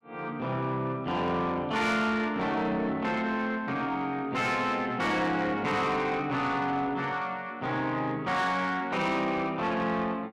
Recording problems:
distortion; soft clipping, signal-to-distortion ratio 11 dB

